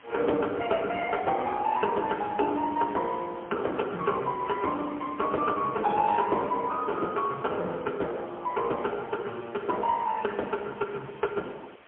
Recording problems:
telephone audio; 260 Hz to 2.8 kHz, AMR-NB, then MP3
hiss; SNR 24 dB

